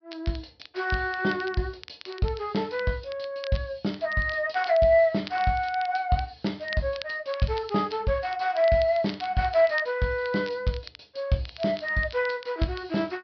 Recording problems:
low-pass filter; nothing above 5.5 kHz
crackling; vinyl, SNR 19 dB

